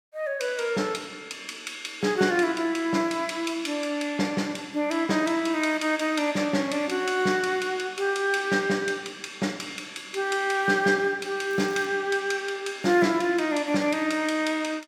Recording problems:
crackle; at 12 s; loose cable, SNR 27 dB

